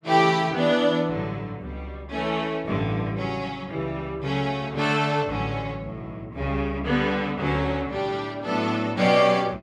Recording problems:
none

